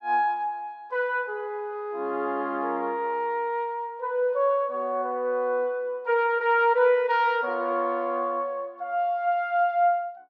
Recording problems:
none

